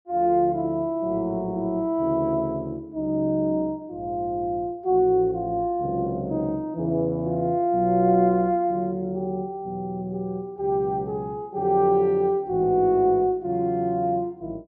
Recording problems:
none

